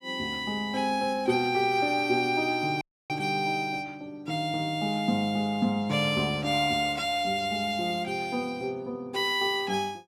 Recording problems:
audio cutting out; at 3 s

